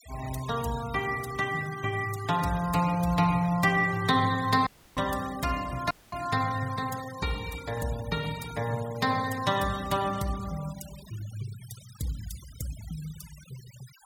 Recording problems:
denoising artefacts; signal-to-artefact ratio 17 dB
audio cutting out; at 4.5 s and at 6 s

